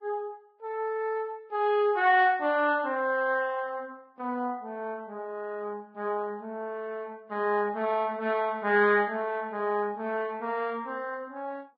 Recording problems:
lossy compression; Vorbis, log-spectral distance 2 dB

